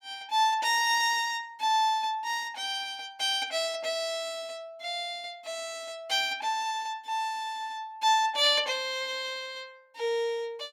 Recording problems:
none

